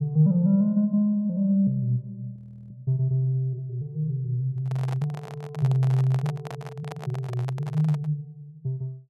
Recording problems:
frozen audio; at 2.5 s
microphone handling noise; from 4.5 to 8 s; peak -8 dB vs average level

